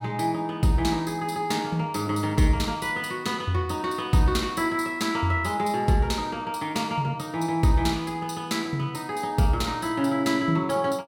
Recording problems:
none

